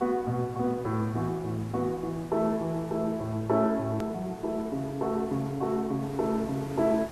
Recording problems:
hiss; slope -5 dB per octave, SNR 17 dB
edit click; at 4 s

